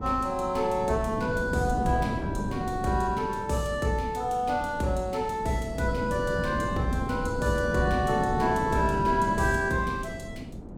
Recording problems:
wind on the microphone; below 310 Hz, SNR 6 dB

